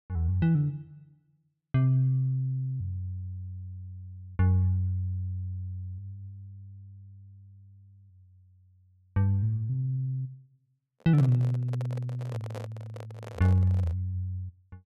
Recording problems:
microphone handling noise; from 11 to 14 s; peak -7 dB vs average level

